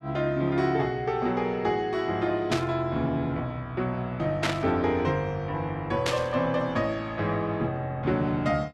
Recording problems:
static burst; at 2.5 s, at 4.5 s and at 6 s; peak +4 dB vs average level

